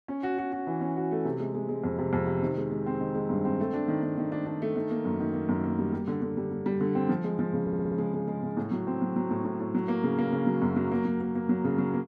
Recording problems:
audio stuttering; at 7.5 s

